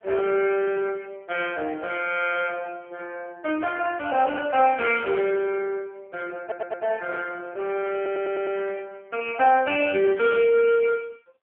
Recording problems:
telephone audio; 320 Hz to 3.1 kHz, AMR-NB
audio stuttering; at 6.5 s and at 8 s
handling noise; from 6.5 to 9 s; peak -17 dB vs average level

